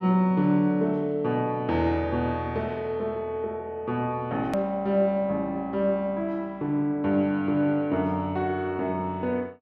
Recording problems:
click at an edit; at 4.5 s

